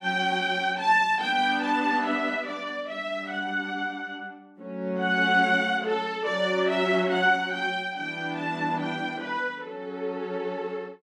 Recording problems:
none

